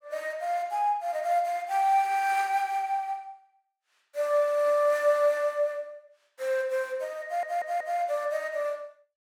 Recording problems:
stutter; at 7 s

